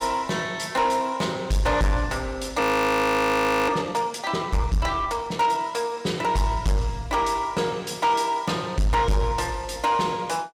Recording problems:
distorted audio; soft clipping, signal-to-distortion ratio 10 dB
frozen audio; at 2.5 s for 1 s

